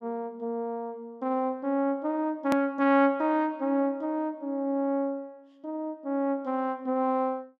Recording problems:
hard cut with a click; at 2.5 s

